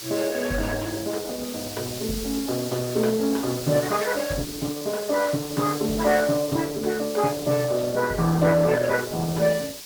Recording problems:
codec artefacts; MP2, then Opus, log-spectral distance 3 dB
hiss; SNR 11 dB

